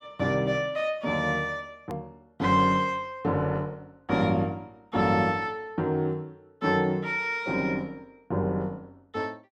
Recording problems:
edit click; at 2 s

